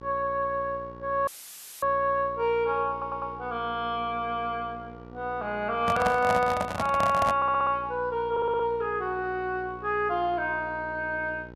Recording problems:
hum; 60 Hz, harmonics up to 1.9 kHz, SNR 18 dB
dropout; at 1.5 s for 0.5 s; filled with static
stutter; at 3 s, at 7.5 s and at 8.5 s
handling noise; from 6 to 7.5 s; peak +2 dB vs average level

